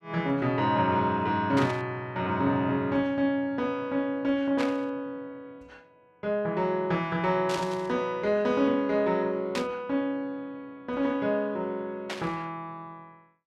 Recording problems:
burst of static; 5 times, first at 1.5 s; peak -2 dB vs average level

